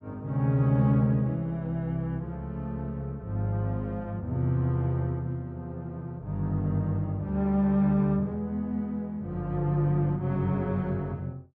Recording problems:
low-pass filter; nothing above 8 kHz

